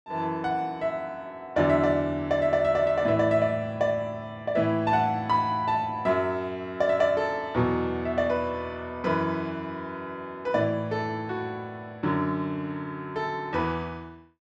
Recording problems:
none

